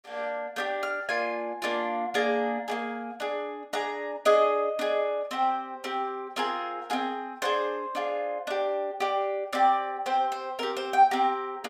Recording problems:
none

